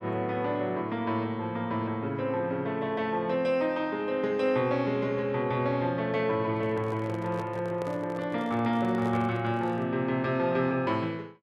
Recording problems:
handling noise; from 6.5 to 10 s; peak -7 dB vs average level

